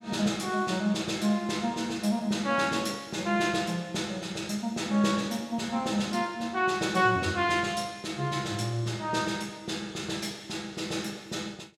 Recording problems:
none

